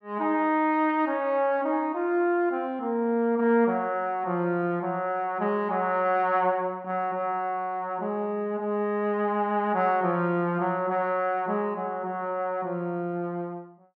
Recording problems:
none

